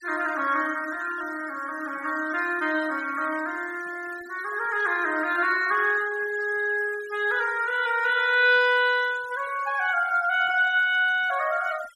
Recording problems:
denoising artefacts; signal-to-artefact ratio 20 dB

